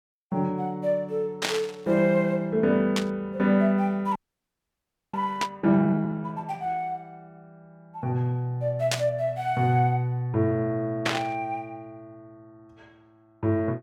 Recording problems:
burst of static; 5 times, first at 1.5 s; peak +4 dB vs average level
audio freezing; at 4 s for 1 s

